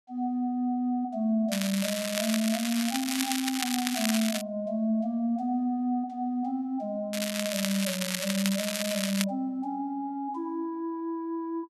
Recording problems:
crackle; from 1.5 to 4.5 s and from 7 to 9.5 s; loose cable, SNR 2 dB

